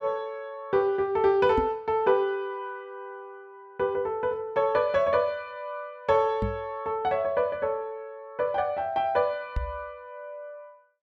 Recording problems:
microphone bump; at 1.5 s, at 6.5 s and at 9.5 s; peak +1 dB vs average level

